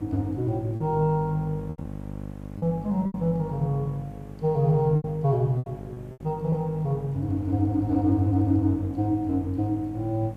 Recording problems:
mains hum; 50 Hz, harmonics up to 850 Hz, SNR 13 dB
background hiss; slope -7 dB per octave, SNR 28 dB
packet loss; 5% of the sound replaced, filled with repeated pitch periods

